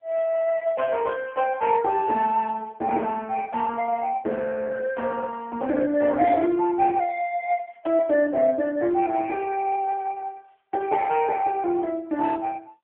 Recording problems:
telephone audio; 240 Hz to 2.3 kHz, AMR-NB

